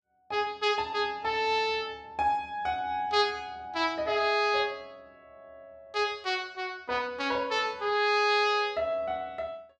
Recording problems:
none

